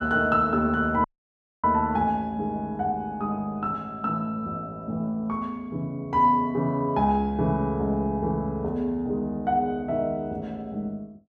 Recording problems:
audio cutting out; at 1 s for 0.5 s

